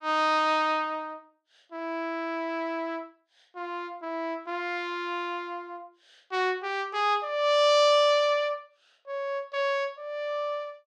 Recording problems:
none

